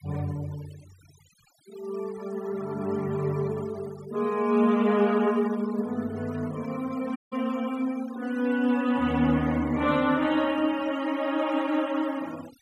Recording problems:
denoising artefacts; signal-to-artefact ratio 21 dB
dropout; at 7 s

